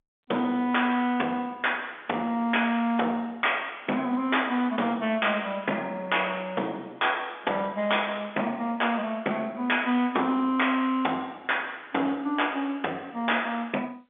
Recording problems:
telephone audio; 190 Hz to 3.5 kHz, G.711
distorted audio; hard clipping, signal-to-distortion ratio 8 dB

